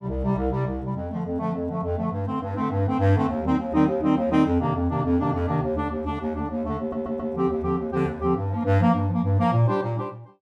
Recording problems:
audio stuttering; at 7 s

